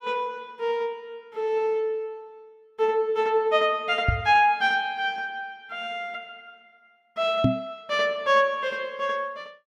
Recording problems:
knock on the microphone; at 4 s and at 7.5 s; peak +7 dB vs average level

